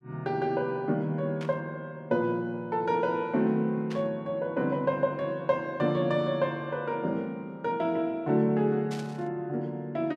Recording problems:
static burst; at 1.5 s, at 4 s and at 9 s; peak -9 dB vs average level

